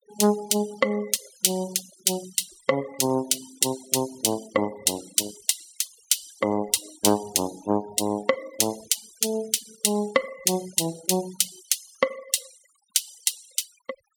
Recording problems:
noise reduction artefacts; signal-to-artefact ratio 19 dB

